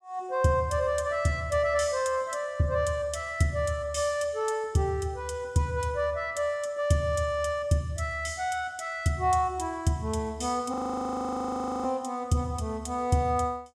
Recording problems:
frozen audio; at 11 s for 1 s

